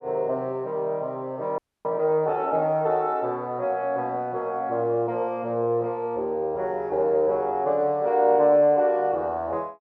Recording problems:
audio freezing; at 1.5 s

